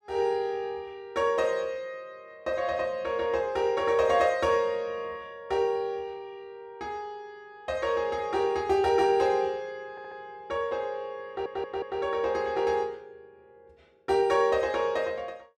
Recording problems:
audio stuttering; at 10 s and at 11 s

